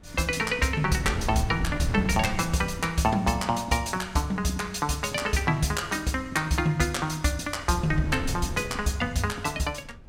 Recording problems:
wind on the microphone; below 150 Hz, SNR 8 dB

